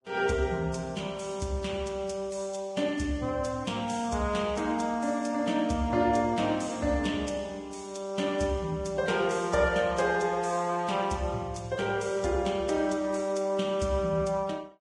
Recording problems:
lossy codec; Vorbis, log-spectral distance 3 dB

